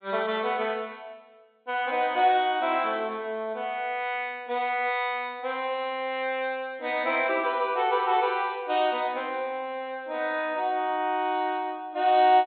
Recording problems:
low-pass filter; nothing above 4 kHz

